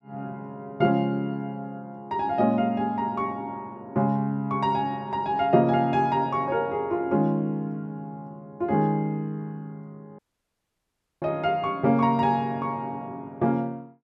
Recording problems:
dropout; at 10 s for 1 s

